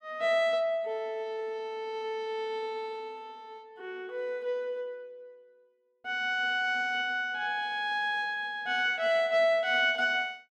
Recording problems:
none

